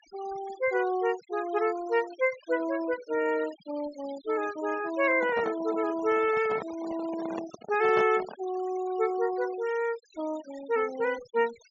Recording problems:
treble missing; nothing above 7.4 kHz
denoising artefacts; signal-to-artefact ratio 19 dB
microphone handling noise; from 5 to 8.5 s; peak -3 dB vs average level

